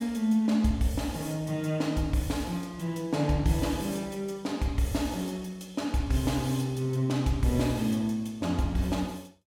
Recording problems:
none

